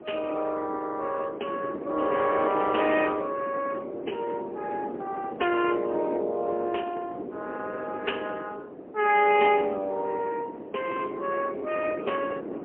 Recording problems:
telephone audio; 280 Hz to 3.1 kHz, AMR-NB, then MP3
wind noise; below 520 Hz, SNR 11 dB
crackle; from 2 to 3 s; loose cable, SNR 19 dB

